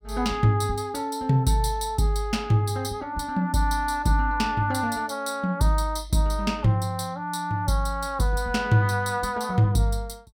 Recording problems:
none

